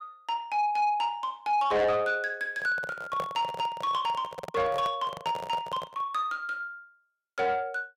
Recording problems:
distortion; soft clipping, signal-to-distortion ratio 10 dB
handling noise; from 2.5 to 6 s; peak -2 dB vs average level

